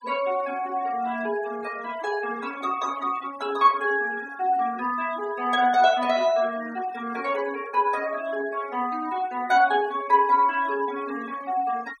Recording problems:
noise reduction artefacts; signal-to-artefact ratio 20 dB

